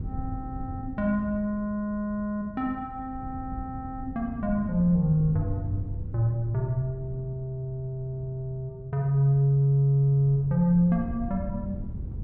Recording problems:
wind noise; below 130 Hz, SNR 13 dB

